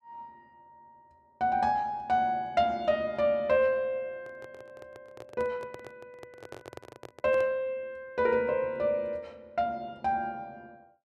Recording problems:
microphone handling noise; from 4 to 7.5 s; peak -10 dB vs average level

